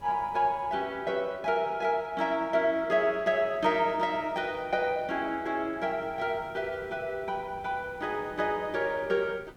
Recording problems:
background hiss; slope -7 dB per octave, SNR 24 dB

